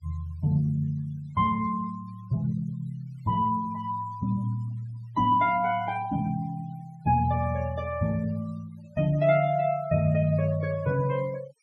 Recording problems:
noise reduction artefacts; signal-to-artefact ratio 23 dB

